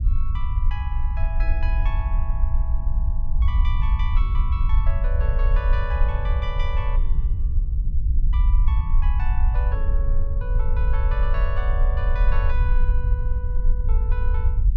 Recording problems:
low-frequency rumble; below 58 Hz, SNR -12 dB

